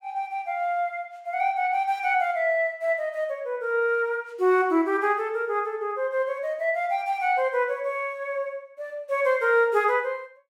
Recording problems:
none

